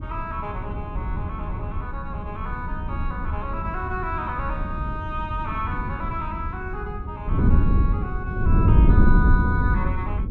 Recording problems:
wind on the microphone; below 120 Hz, SNR -6 dB

